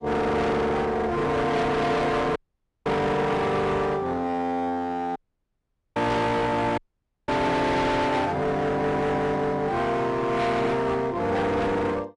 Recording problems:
lossy compression; AAC, log-spectral distance 2 dB, nothing above 10.7 kHz
distortion; hard clipping, uneven, signal-to-distortion ratio 6 dB
audio cutting out; at 2.5 s, at 5 s for 1 s and at 7 s for 0.5 s

